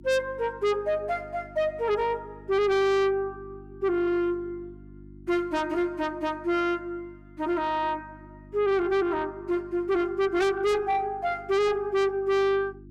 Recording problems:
distorted audio; soft clipping, signal-to-distortion ratio 6 dB
hum; 50 Hz, harmonics up to 350 Hz, SNR 22 dB

